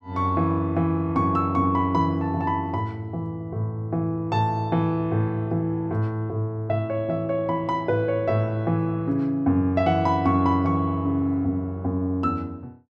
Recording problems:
none

